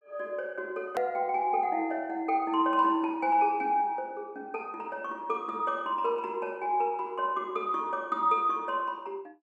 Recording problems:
click at an edit; at 1 s

